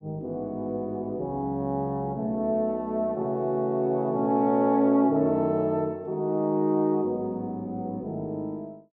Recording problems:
none

